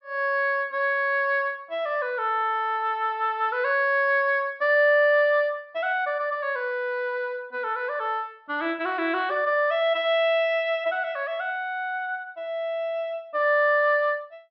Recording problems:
low-pass filter; nothing above 5.5 kHz

